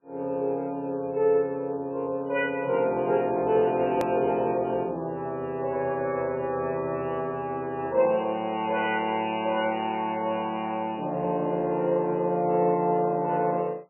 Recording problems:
lossy codec; MP3, log-spectral distance 2 dB, nothing above 2.4 kHz
edit click; at 4 s

